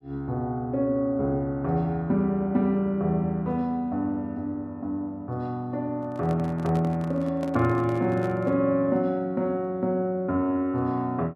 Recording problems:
handling noise; from 6 to 8.5 s; peak -7 dB vs average level

